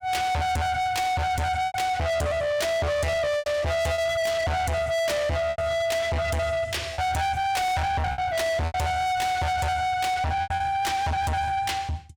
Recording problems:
distorted audio; soft clipping, signal-to-distortion ratio 6 dB
lost packets; 5% of the sound replaced, filled with repeated pitch periods

